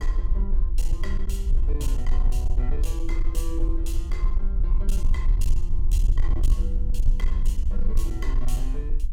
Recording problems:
distorted audio; hard clipping, uneven, signal-to-distortion ratio 11 dB
rumble; below 44 Hz, strongest tone 20 Hz, SNR -11 dB

